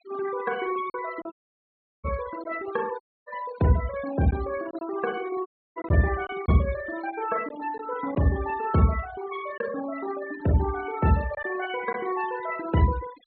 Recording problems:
treble cut off; nothing above 4.4 kHz
denoising artefacts; signal-to-artefact ratio 14 dB
lost packets; 3% of the sound replaced, filled with silence
dropout; at 1.5 s for 0.5 s, at 3 s and at 5.5 s

